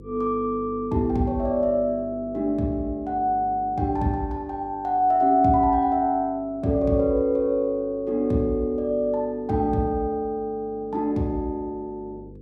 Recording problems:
hum; 50 Hz, harmonics up to 500 Hz, SNR 22 dB

